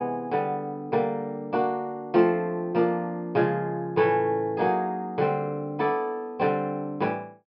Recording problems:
treble cut off; nothing above 5.5 kHz

